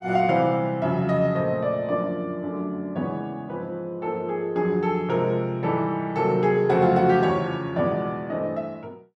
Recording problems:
none

